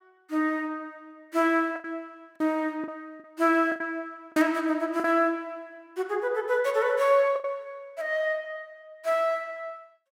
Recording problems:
packet loss; 5% of the sound replaced, filled with the last packet

